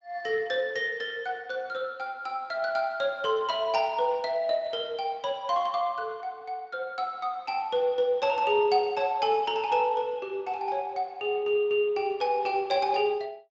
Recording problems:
codec artefacts; Speex, log-spectral distance 2 dB

